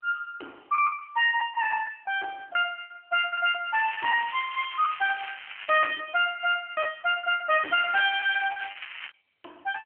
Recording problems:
telephone audio; 260 Hz to 3.4 kHz, AMR-NB
distortion; soft clipping, signal-to-distortion ratio 10 dB
packet loss; 9% of the sound replaced, filled with the last packet
crackling; from 3.5 to 6 s and from 8 to 9 s; loose cable, SNR 13 dB

